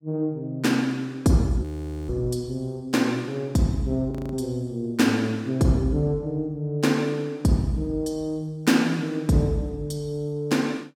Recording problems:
audio freezing; at 1.5 s and at 4 s

